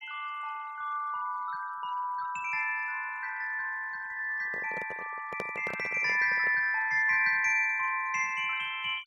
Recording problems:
noise reduction artefacts; signal-to-artefact ratio 24 dB
microphone handling noise; from 4.5 to 6.5 s; peak -4 dB vs average level

